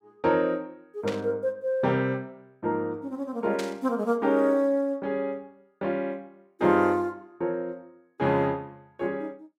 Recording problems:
static burst; at 1 s and at 3.5 s; peak -5 dB vs average level

